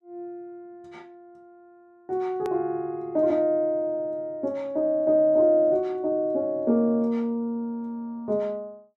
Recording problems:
edit click; at 2.5 s

